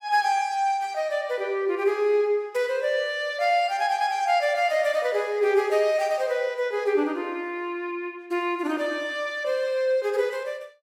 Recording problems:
none

